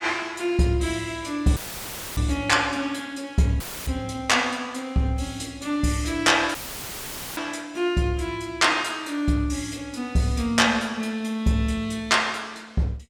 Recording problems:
audio cutting out; at 1.5 s for 0.5 s, at 3.5 s and at 6.5 s for 1 s; filled with static

